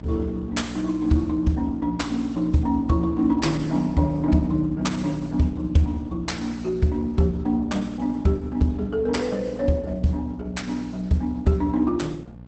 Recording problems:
codec artefacts; Opus, log-spectral distance 3 dB, nothing above 8 kHz
hum; 60 Hz, harmonics up to 900 Hz, SNR 17 dB

